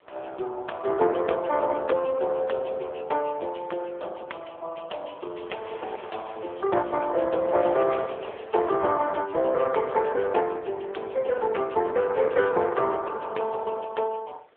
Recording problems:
phone line; 340 Hz to 3.5 kHz, AMR-NB
wind noise; below 1.6 kHz, SNR 22 dB

